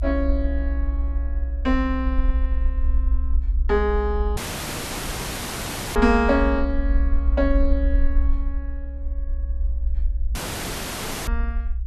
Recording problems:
low-frequency rumble; below 62 Hz, SNR 1 dB
dropout; at 4.5 s for 1.5 s and at 10 s for 1 s

